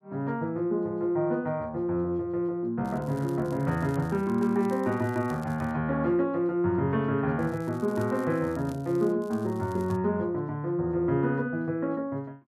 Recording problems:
crackle; from 3 to 5.5 s, from 7.5 to 9 s and at 9 s; loose cable, SNR 27 dB

